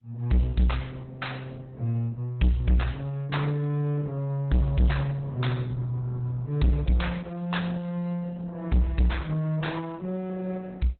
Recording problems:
lossy codec; Opus, log-spectral distance 3 dB, nothing above 4 kHz
distortion; soft clipping, signal-to-distortion ratio 6 dB

